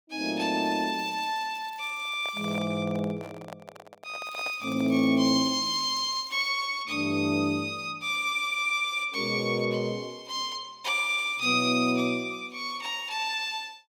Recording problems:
crackling; from 0.5 to 2.5 s and from 4 to 6.5 s; loose cable, SNR 27 dB
handling noise; from 2 to 5 s; peak -8 dB vs average level

